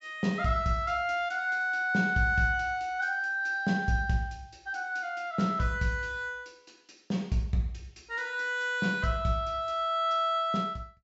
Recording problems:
treble missing; nothing above 8 kHz

